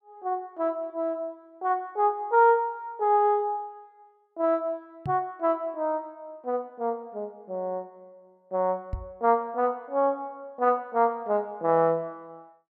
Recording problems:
microphone thump; at 5 s and at 9 s; peak -2 dB vs average level

